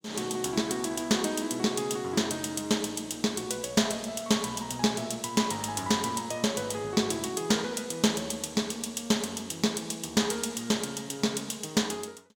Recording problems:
none

